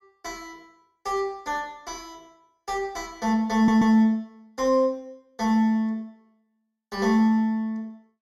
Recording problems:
audio stuttering; at 3.5 s

